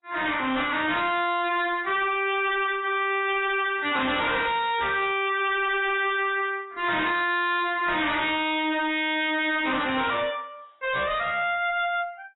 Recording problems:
codec artefacts; AAC, log-spectral distance 6 dB, nothing above 3.3 kHz
distorted audio; hard clipping, signal-to-distortion ratio 6 dB

